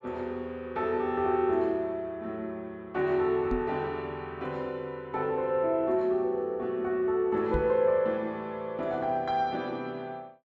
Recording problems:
microphone thump; at 3.5 s and at 7.5 s; peak +1 dB vs average level

